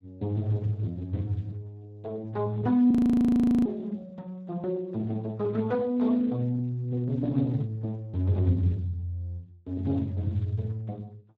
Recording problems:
lossy compression; Speex, log-spectral distance 2 dB, nothing above 13.1 kHz
audio freezing; at 3 s for 0.5 s

